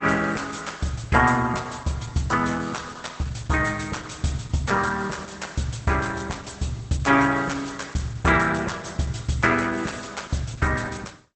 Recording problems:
lossy compression; Opus, log-spectral distance 8 dB, nothing above 8.2 kHz

